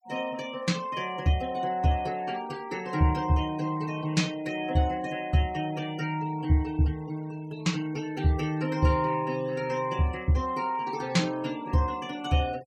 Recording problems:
noise reduction artefacts; signal-to-artefact ratio 22 dB

